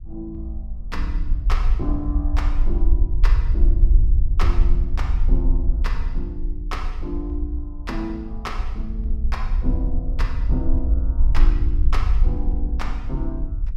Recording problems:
rumble; below 52 Hz, SNR -8 dB

